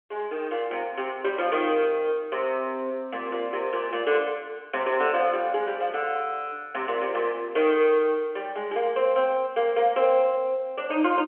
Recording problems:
telephone audio; 280 Hz to 3.3 kHz, G.711

